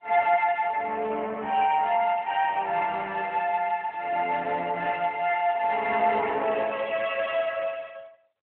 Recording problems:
telephone audio; 300 Hz to 3.2 kHz, AMR-NB

